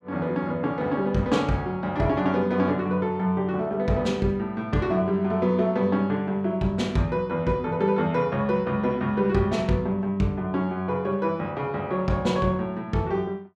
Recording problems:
none

